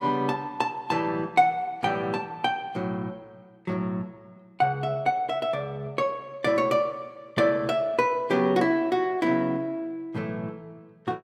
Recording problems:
none

